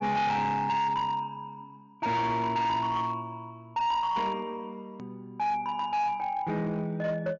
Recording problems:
treble cut off; nothing above 6.9 kHz
distortion; hard clipping, uneven, signal-to-distortion ratio 11 dB
hard cut with a click; at 5 s

